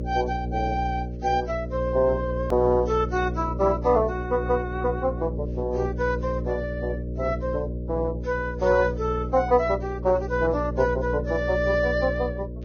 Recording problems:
codec artefacts; Vorbis, log-spectral distance 2 dB, nothing above 6.3 kHz
electrical hum; 60 Hz, harmonics up to 600 Hz, SNR 6 dB
edit click; at 2.5 s

